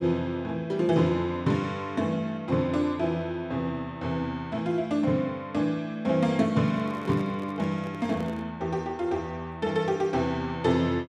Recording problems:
microphone handling noise; from 6.5 to 8.5 s; peak -8 dB vs average level

